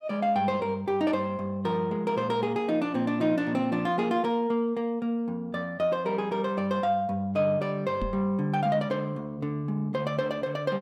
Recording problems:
knock on the microphone; at 8 s; peak -2 dB vs average level

